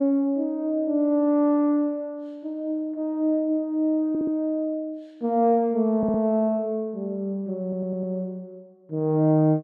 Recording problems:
audio stuttering; at 4 s, at 6 s and at 7.5 s

